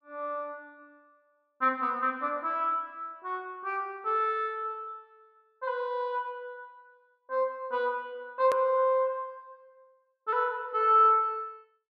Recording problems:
hard cut with a click; at 8.5 s

